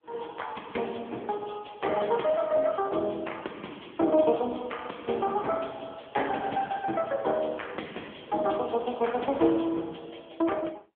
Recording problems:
telephone audio; 220 Hz to 3.4 kHz, AMR-NB

